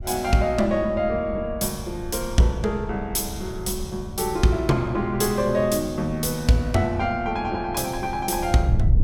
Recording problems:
wind noise; below 110 Hz, SNR 11 dB

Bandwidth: 17.5 kHz